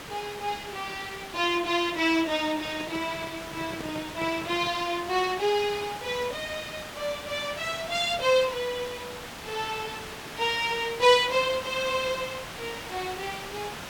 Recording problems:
hiss; SNR 11 dB
handling noise; from 2.5 to 5 s; peak -7 dB vs average level

